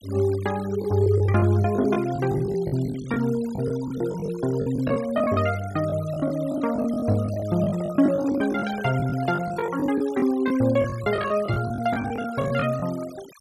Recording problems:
denoising artefacts; signal-to-artefact ratio 19 dB
packet loss; 14% of the sound replaced, filled with the last packet
microphone handling noise; from 7.5 to 9.5 s; peak -8 dB vs average level

